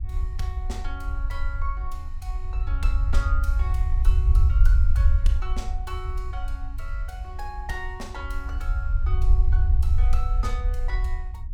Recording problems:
hum; 50 Hz, harmonics up to 600 Hz, SNR 20 dB
low-frequency rumble; below 66 Hz, SNR -12 dB

